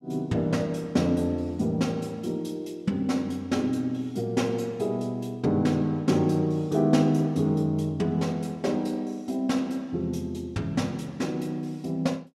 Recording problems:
none

